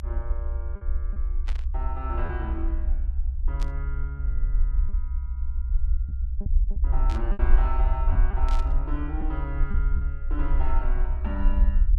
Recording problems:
rumble; below 60 Hz, SNR -9 dB
packet loss; 3% of the sound replaced, filled with repeated pitch periods
static burst; 4 times, first at 1.5 s; peak 0 dB vs average level

